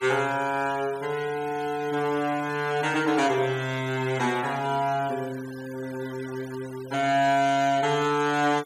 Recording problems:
noise reduction artefacts; signal-to-artefact ratio 18 dB

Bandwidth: 15.5 kHz